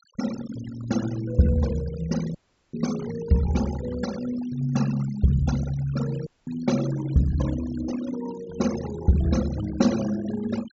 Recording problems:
treble cut off; nothing above 8 kHz
denoising artefacts; signal-to-artefact ratio 13 dB
dropout; at 2.5 s and at 6.5 s

